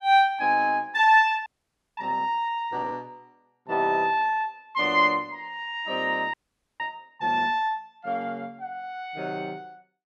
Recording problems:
frozen audio; at 1.5 s for 0.5 s and at 6.5 s

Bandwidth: 12 kHz